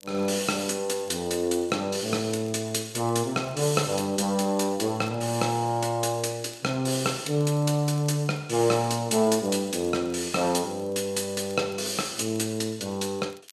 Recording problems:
crackling; vinyl, SNR 29 dB

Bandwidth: 13.5 kHz